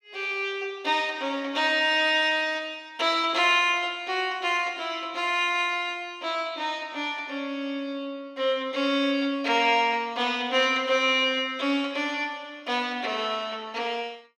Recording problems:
none

